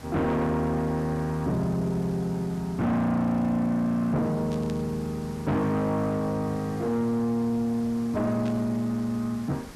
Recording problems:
distorted audio; soft clipping, signal-to-distortion ratio 8 dB
background hiss; slope -4 dB per octave, SNR 19 dB
burst of static; at 4.5 s and at 8.5 s; peak -13 dB vs average level

